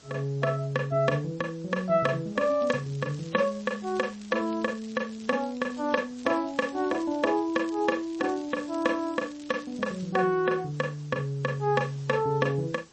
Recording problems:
lossy codec; MP3, log-spectral distance 3 dB, nothing above 8.2 kHz
hiss; SNR 25 dB
crackling; from 2.5 to 6 s and from 6 to 10 s; loose cable, SNR 24 dB

